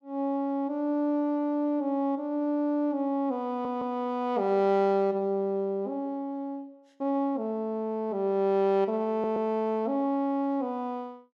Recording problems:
stutter; at 3.5 s and at 9 s

